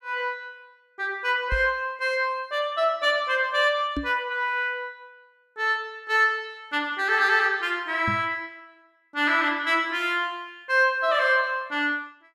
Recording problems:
microphone bump; at 1.5 s, at 4 s and at 8 s; peak -2 dB vs average level

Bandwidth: 14.5 kHz